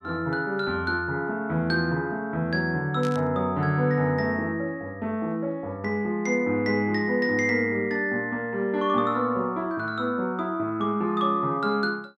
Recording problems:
burst of static; at 3 s; peak -10 dB vs average level

